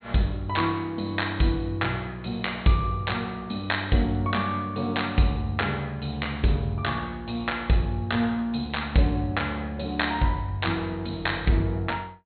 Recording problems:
treble cut off; nothing above 4.3 kHz

